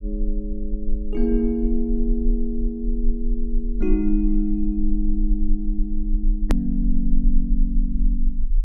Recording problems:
low-frequency rumble; below 34 Hz, strongest tone 20 Hz, SNR 0 dB
hard cut with a click; at 6.5 s

